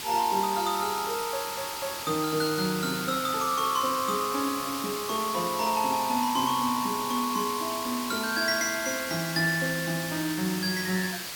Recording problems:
background hiss; slope +1 dB per octave, SNR 6 dB

